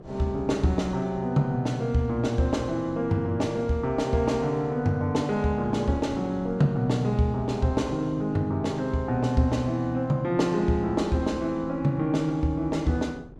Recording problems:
wind noise; below 370 Hz, SNR 21 dB

